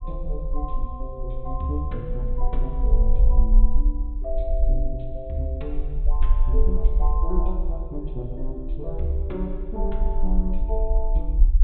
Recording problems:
treble missing; nothing above 4 kHz
low-frequency rumble; below 46 Hz, SNR -6 dB

